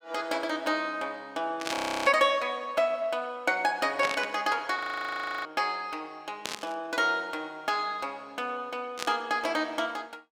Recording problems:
static burst; 4 times, first at 1.5 s; peak +1 dB vs average level
frozen audio; at 2 s and at 5 s for 0.5 s

